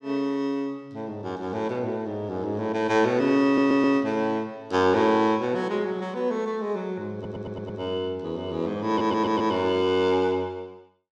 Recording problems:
audio stuttering; at 3.5 s, at 7 s and at 9 s

